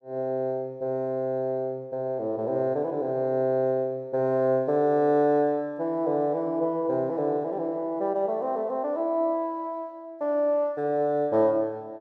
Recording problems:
none

